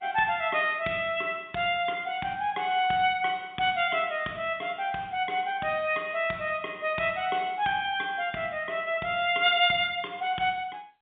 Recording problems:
telephone audio; 220 Hz to 3.7 kHz, G.711

